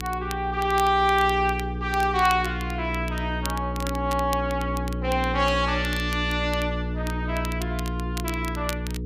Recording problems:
hum; 60 Hz, harmonics up to 480 Hz, SNR 5 dB
crackle; vinyl, SNR 15 dB

